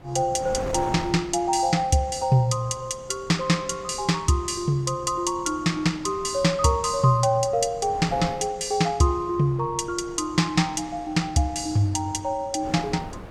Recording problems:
wind on the microphone; below 680 Hz, SNR 18 dB

